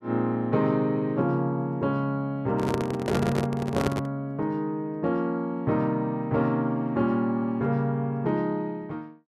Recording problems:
microphone handling noise; from 2.5 to 4 s; peak +4 dB vs average level

